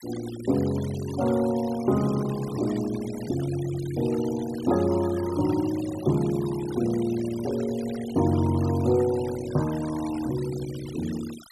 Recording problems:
denoising artefacts; signal-to-artefact ratio 17 dB

